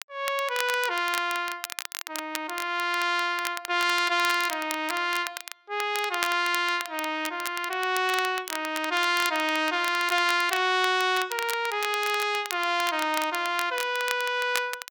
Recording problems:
crackling; vinyl, SNR 10 dB

